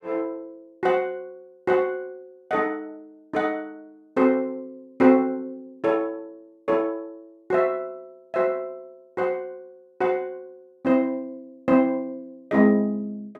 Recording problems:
none

